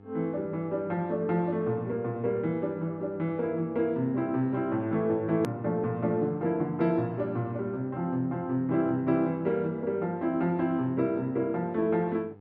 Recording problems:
mains hum; 50 Hz, harmonics up to 1.3 kHz, SNR 23 dB
hard cut with a click; at 5.5 s

